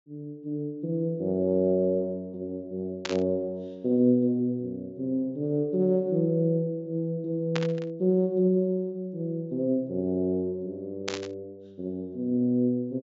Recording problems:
treble missing; nothing above 7.5 kHz
burst of static; at 3 s, at 7.5 s and at 11 s; peak 0 dB vs average level

